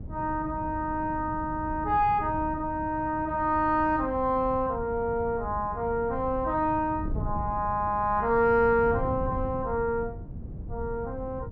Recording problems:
wind noise; below 150 Hz, SNR 11 dB

